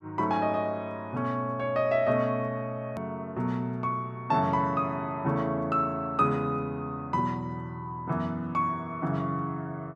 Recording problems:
click at an edit; at 3 s

